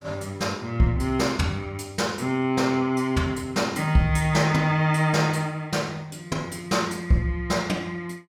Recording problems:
none

